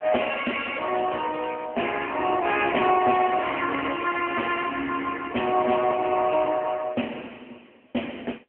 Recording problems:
phone line; 260 Hz to 3.2 kHz, AMR-NB

